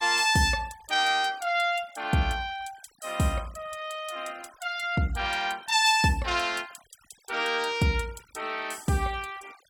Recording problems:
denoising artefacts; signal-to-artefact ratio 24 dB

